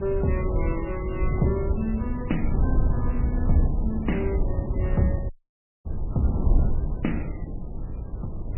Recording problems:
lossy codec; MP3, log-spectral distance 2 dB, nothing above 2.9 kHz
wind on the microphone; below 96 Hz, SNR -1 dB
audio cutting out; at 5.5 s for 0.5 s

